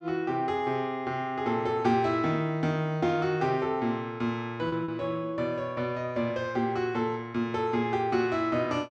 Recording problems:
lost packets; 0.9% of the sound replaced, filled with repeated pitch periods

